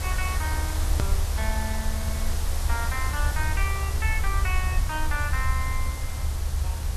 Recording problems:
background hiss; slope -3 dB per octave, SNR 3 dB
rumble; below 74 Hz, SNR -4 dB
click at an edit; at 1 s

